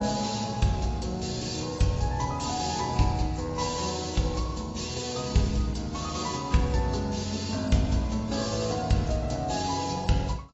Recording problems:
lossy codec; AAC, log-spectral distance 7 dB, nothing above 7.6 kHz

